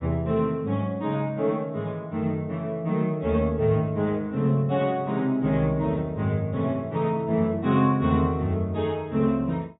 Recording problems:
low-pass filter; nothing above 4 kHz

